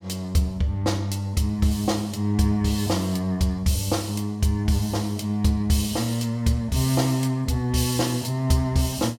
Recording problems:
none

